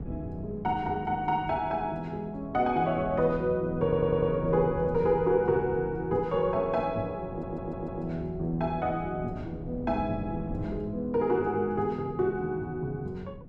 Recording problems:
wind noise; below 210 Hz, SNR 14 dB
audio stuttering; at 4 s and at 7.5 s

